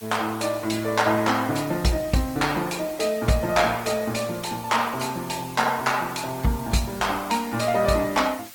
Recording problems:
codec artefacts; Opus, log-spectral distance 6 dB, nothing above 18.3 kHz
background hiss; slope +1 dB per octave, SNR 19 dB

